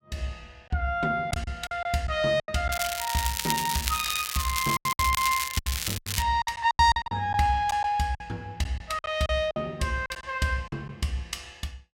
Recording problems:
packet loss; 10% of the sound replaced, filled with silence
crackling; from 2.5 to 6 s; loose cable, SNR 3 dB

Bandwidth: 16.5 kHz